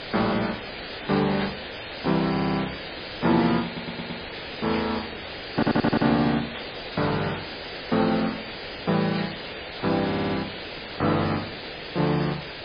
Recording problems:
lossy compression; MP3, log-spectral distance 24 dB
background hiss; SNR 8 dB
static burst; 4 times, first at 1.5 s; peak -4 dB vs average level
stutter; 4 times, first at 2.5 s

